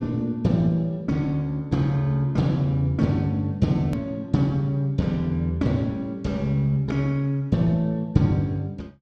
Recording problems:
hard cut with a click; at 4 s

